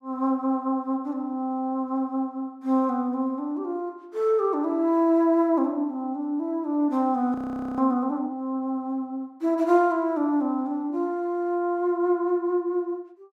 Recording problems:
frozen audio; at 7.5 s

